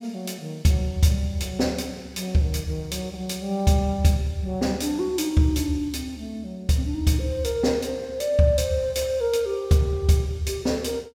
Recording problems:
none

